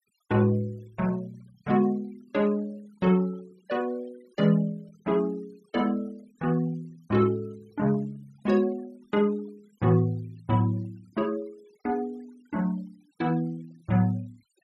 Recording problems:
denoising artefacts; signal-to-artefact ratio 27 dB

